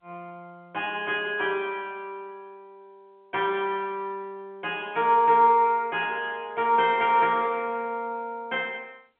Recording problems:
phone line; 220 Hz to 3.5 kHz, G.711

